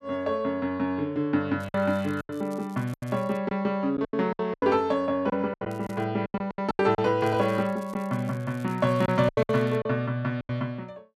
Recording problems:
lost packets; 10% of the sound replaced, filled with silence
crackling; from 1.5 to 3.5 s, at 5.5 s and from 7 to 10 s; loose cable, SNR 28 dB

